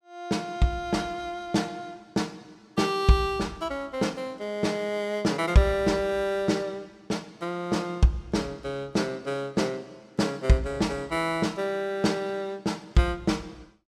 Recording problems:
none

